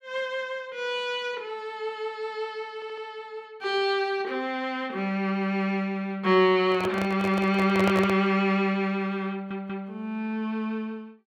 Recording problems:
stutter; at 2.5 s and at 9.5 s
microphone handling noise; from 6.5 to 8.5 s; peak +1 dB vs average level

